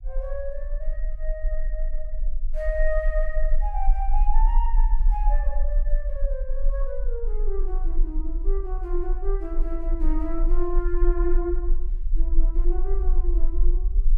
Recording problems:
rumble; below 36 Hz, strongest tone 20 Hz, SNR -6 dB

